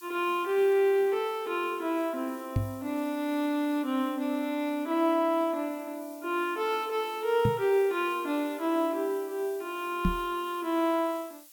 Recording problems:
background hiss; slope +6 dB per octave, SNR 22 dB
microphone bump; at 2.5 s, at 7.5 s and at 10 s; peak +5 dB vs average level

